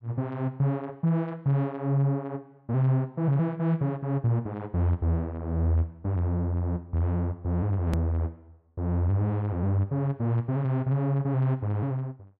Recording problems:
hard cut with a click; at 8 s

